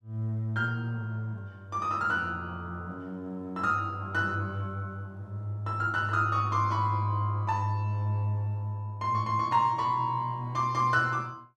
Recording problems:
none

